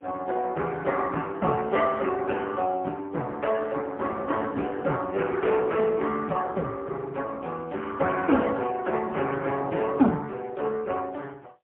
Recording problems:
phone line; 240 Hz to 3.3 kHz, AMR-NB, then MP3

